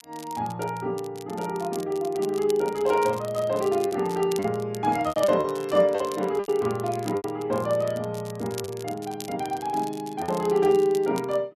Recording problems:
crackle; vinyl, SNR 18 dB
packet loss; 5% of the sound replaced, filled with repeated pitch periods

